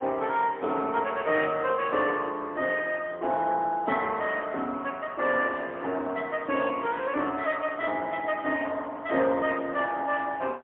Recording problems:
phone line; 280 Hz to 3.3 kHz, AMR-NB, then MP3

